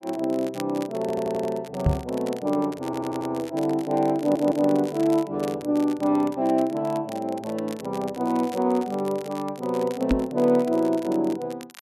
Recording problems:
crackling; vinyl, SNR 20 dB
stutter; at 1 s, at 3 s and at 4 s
knock on the microphone; at 2 s and at 10 s; peak +8 dB vs average level

